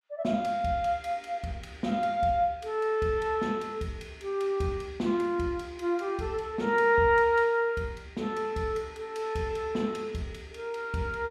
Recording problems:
none

